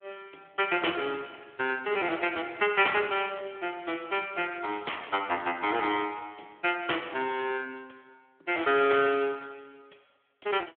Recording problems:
phone line; 320 Hz to 3.3 kHz, Speex

